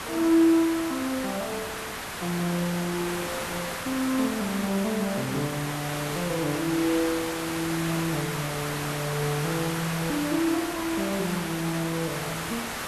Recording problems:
background hiss; SNR 4 dB

